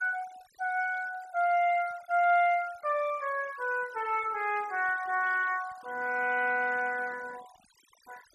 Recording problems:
noise reduction artefacts; signal-to-artefact ratio 22 dB

